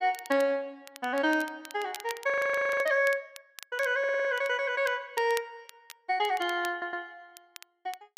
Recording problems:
crackling; vinyl, SNR 19 dB
frozen audio; at 2.5 s for 0.5 s
audio stuttering; at 4 s and at 6.5 s

